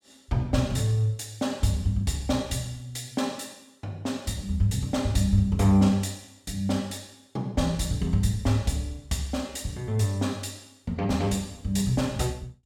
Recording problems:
none

